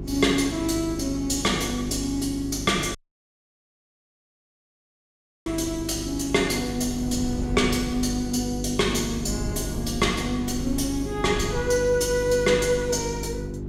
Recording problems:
hum; 50 Hz, harmonics up to 400 Hz, SNR 9 dB
wind noise; below 170 Hz, SNR 14 dB
audio cutting out; at 3 s for 2.5 s

